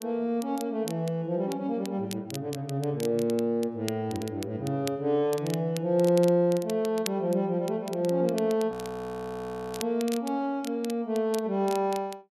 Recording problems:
crackle; vinyl, SNR 16 dB
audio freezing; at 8.5 s for 1 s

